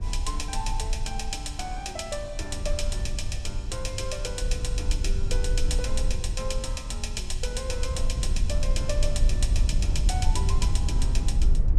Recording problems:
low-frequency rumble; below 60 Hz, SNR -4 dB

